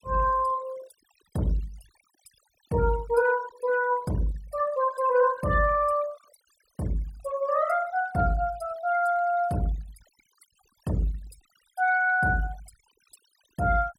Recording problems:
noise reduction artefacts; signal-to-artefact ratio 23 dB

